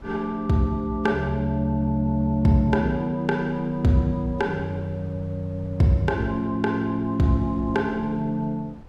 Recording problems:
wind noise; below 250 Hz, SNR 22 dB

